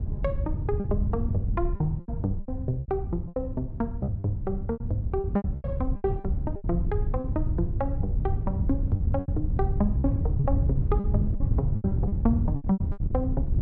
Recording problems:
wind on the microphone; below 110 Hz, SNR -2 dB
packet loss; 12% of the sound replaced, filled with repeated pitch periods

